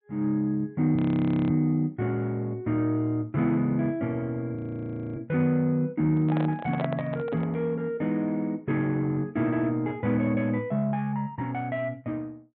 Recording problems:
treble missing; nothing above 4 kHz
frozen audio; at 1 s for 0.5 s and at 4.5 s for 0.5 s
handling noise; from 6 to 7.5 s; peak -1 dB vs average level

